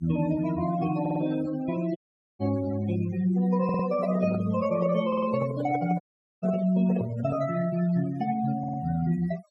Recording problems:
noise reduction artefacts; signal-to-artefact ratio 15 dB
stutter; 4 times, first at 1 s
dropout; at 2 s and at 6 s
handling noise; from 3.5 to 7.5 s; peak -4 dB vs average level

